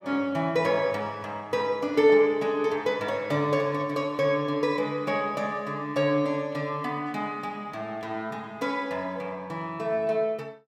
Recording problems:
none

